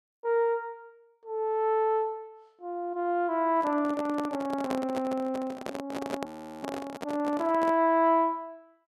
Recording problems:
handling noise; from 3.5 to 8 s; peak -1 dB vs average level
audio freezing; at 6.5 s

